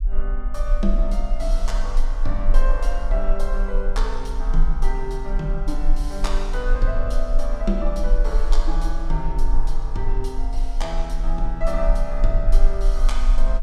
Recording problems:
low-frequency rumble; below 34 Hz, strongest tone 20 Hz, SNR -5 dB

